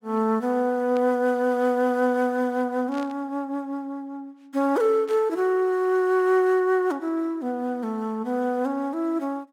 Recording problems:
static burst; at 1 s, at 3 s and at 5 s; peak -14 dB vs average level

